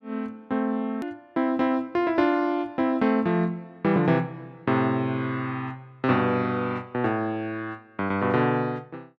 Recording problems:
edit click; at 1 s

